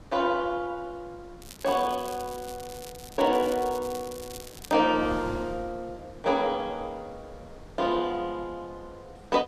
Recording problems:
wind on the microphone; below 550 Hz, SNR 18 dB
crackle; from 1.5 to 4.5 s; loose cable, SNR 16 dB

